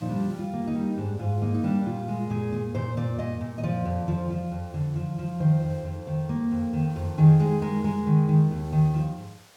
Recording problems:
background hiss; slope -1 dB per octave, SNR 29 dB

